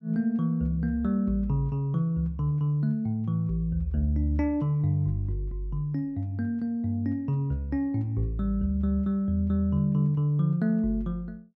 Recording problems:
none

